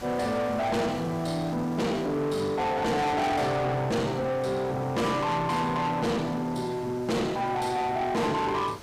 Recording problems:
distorted audio; soft clipping, signal-to-distortion ratio 7 dB
background hiss; slope -4 dB per octave, SNR 19 dB

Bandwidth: 15.5 kHz